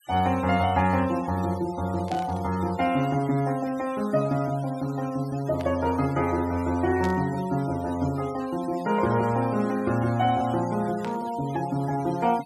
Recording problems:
noise reduction artefacts; signal-to-artefact ratio 19 dB
static burst; 4 times, first at 2 s; peak -10 dB vs average level

